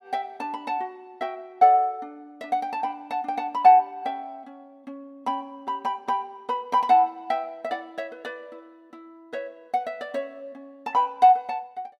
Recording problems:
none

